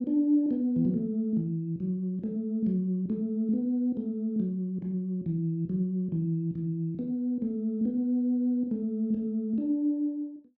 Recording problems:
none

